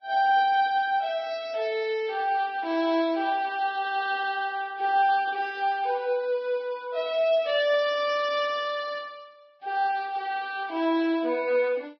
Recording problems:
lossy compression; Vorbis, log-spectral distance 2 dB, nothing above 4.8 kHz

